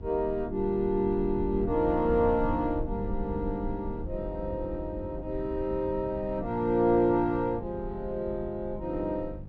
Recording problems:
electrical hum; 50 Hz, harmonics up to 600 Hz, SNR 20 dB
low-frequency rumble; below 92 Hz, SNR 12 dB

